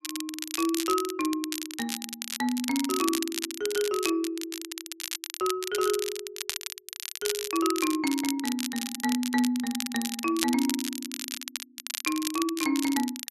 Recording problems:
crackling; vinyl, SNR 5 dB

